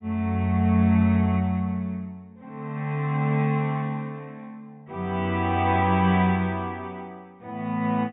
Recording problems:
low-pass filter; nothing above 4 kHz

